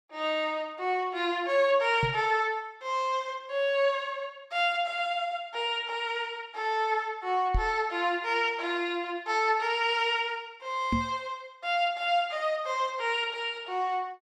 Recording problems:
knock on the microphone; at 2 s, at 7.5 s and at 11 s; peak +3 dB vs average level

